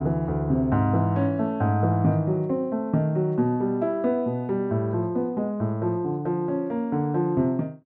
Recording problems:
none

